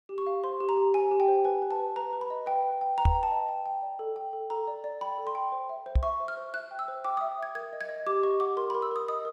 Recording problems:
microphone bump; at 3 s and at 6 s; peak +8 dB vs average level

